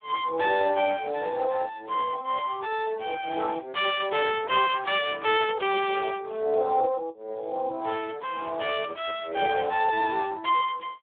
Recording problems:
phone line; 340 Hz to 3.5 kHz, Speex

